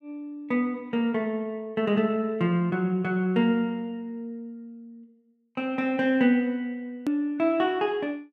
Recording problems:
hard cut with a click; at 7 s

